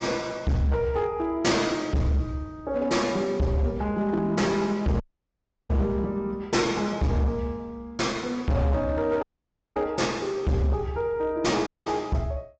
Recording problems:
treble missing; nothing above 7.3 kHz
lossy compression; AAC, log-spectral distance 2 dB
distortion; hard clipping, signal-to-distortion ratio 7 dB
audio cutting out; at 5 s for 0.5 s, at 9 s for 0.5 s and at 12 s

